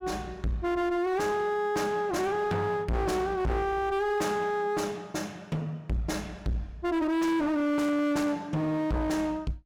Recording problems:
distorted audio; hard clipping, uneven, signal-to-distortion ratio 6 dB

